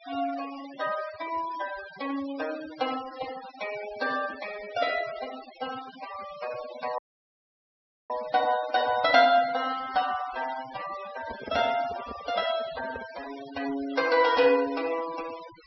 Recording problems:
treble cut off; nothing above 5.6 kHz
denoising artefacts; signal-to-artefact ratio 14 dB
dropout; at 7 s for 1 s
handling noise; from 11 to 13 s; peak -5 dB vs average level

